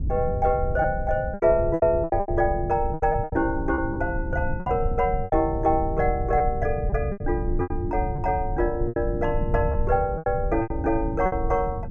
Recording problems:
rumble; below 110 Hz, SNR 6 dB
packet loss; 11% of the sound replaced, filled with repeated pitch periods

